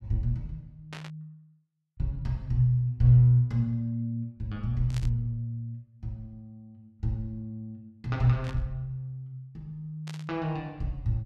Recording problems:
burst of static; 4 times, first at 1 s; peak -10 dB vs average level

